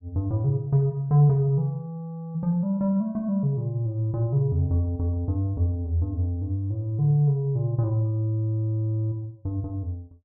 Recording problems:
none

